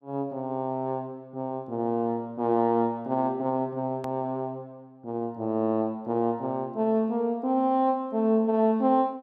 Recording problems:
click at an edit; at 4 s

